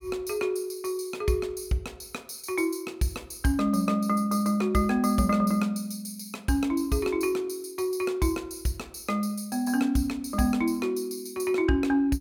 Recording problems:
none

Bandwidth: 17 kHz